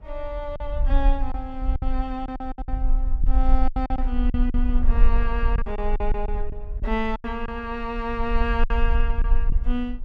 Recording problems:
low-frequency rumble; below 44 Hz, strongest tone 22 Hz, SNR -3 dB
wind noise; below 670 Hz, SNR 20 dB
packet loss; 9% of the sound replaced, filled with silence

